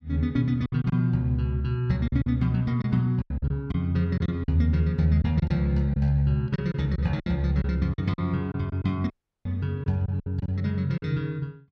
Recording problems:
lost packets; 9% of the sound replaced, filled with silence
dropout; at 9 s

